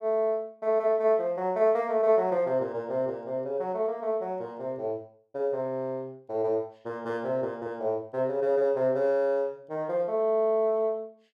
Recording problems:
none

